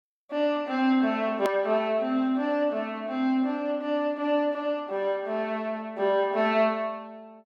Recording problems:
edit click; at 1.5 s

